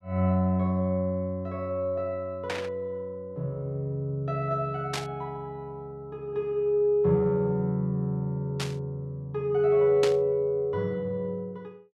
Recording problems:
burst of static; 4 times, first at 2.5 s; peak +1 dB vs average level

